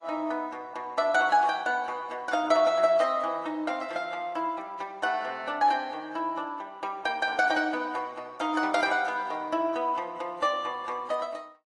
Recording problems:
lossy compression; AAC, log-spectral distance 2 dB

